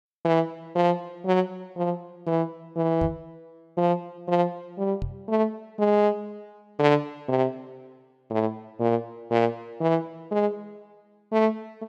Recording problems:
microphone bump; at 3 s and at 5 s; peak -1 dB vs average level

